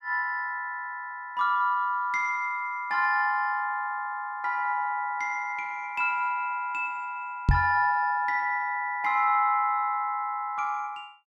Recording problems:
microphone thump; at 7.5 s; peak +8 dB vs average level

